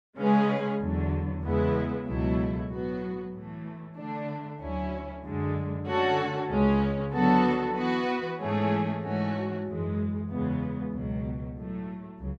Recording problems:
none

